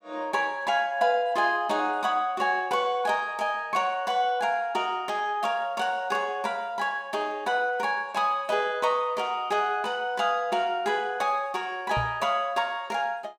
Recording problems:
microphone thump; at 12 s; peak -2 dB vs average level

